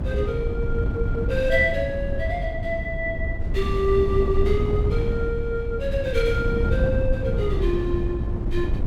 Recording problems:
wind on the microphone; below 120 Hz, SNR 1 dB

